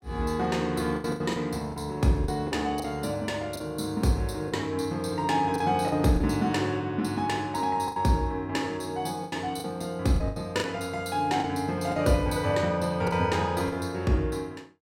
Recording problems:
lost packets; 7% of the sound replaced, filled with the last packet

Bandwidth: 16.5 kHz